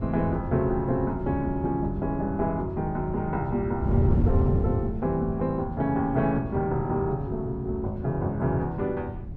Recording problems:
wind on the microphone; below 150 Hz, SNR 4 dB

